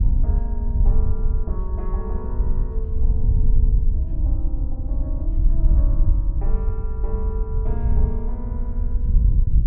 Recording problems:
wind on the microphone; below 60 Hz, SNR -14 dB

